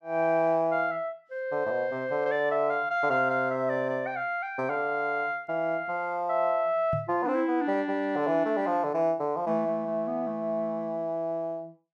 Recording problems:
knock on the microphone; at 7 s; peak -2 dB vs average level

